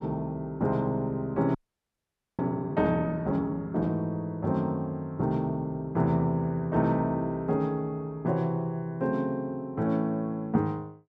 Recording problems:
audio freezing; at 1.5 s for 1 s

